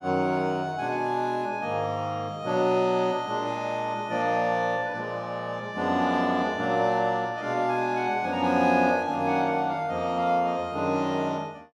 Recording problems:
none

